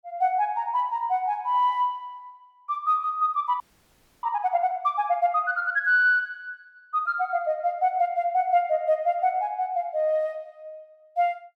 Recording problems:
audio freezing; at 3.5 s for 0.5 s

